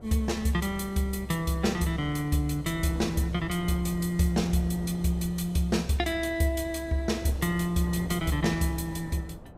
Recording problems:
wind on the microphone; below 430 Hz, SNR 15 dB

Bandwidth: 15.5 kHz